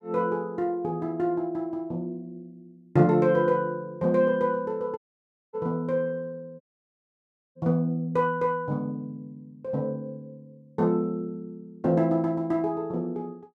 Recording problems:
dropout; at 5 s for 0.5 s and at 6.5 s for 1 s

